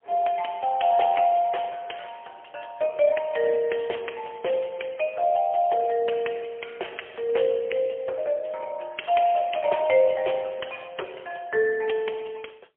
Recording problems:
phone line; 340 Hz to 3.3 kHz, AMR-NB, then MP3

